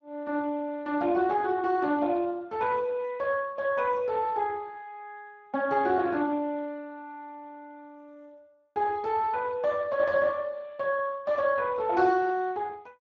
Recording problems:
codec artefacts; Speex, log-spectral distance 2 dB

